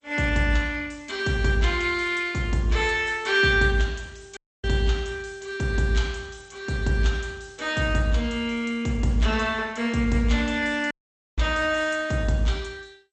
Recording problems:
codec artefacts; MP2, log-spectral distance 3 dB, nothing above 8.2 kHz
audio cutting out; at 4.5 s and at 11 s

